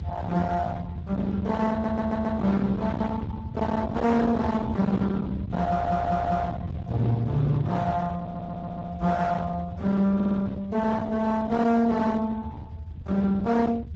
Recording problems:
lossy codec; Speex, log-spectral distance 2 dB
distortion; hard clipping, signal-to-distortion ratio 7 dB
low-frequency rumble; below 660 Hz, SNR 8 dB
audio stuttering; 4 times, first at 1.5 s

